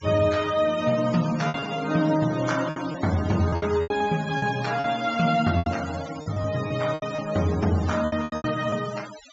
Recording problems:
treble cut off; nothing above 7.4 kHz
noise reduction artefacts; signal-to-artefact ratio 15 dB
lost packets; 10% of the sound replaced, filled with repeated pitch periods

